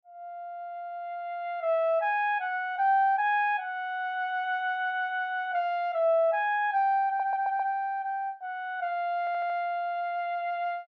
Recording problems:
audio stuttering; at 7 s and at 9 s

